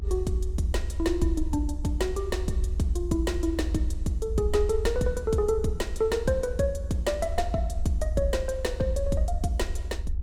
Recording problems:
hum; 60 Hz, harmonics up to 960 Hz, SNR 25 dB
low-frequency rumble; below 74 Hz, SNR 4 dB

